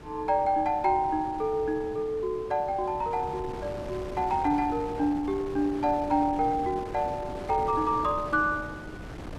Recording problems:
wind on the microphone; below 640 Hz, SNR 13 dB

